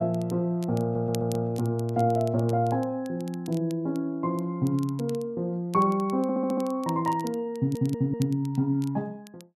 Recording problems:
crackle; vinyl, SNR 22 dB
audio stuttering; at 1 s, at 6 s and at 7.5 s

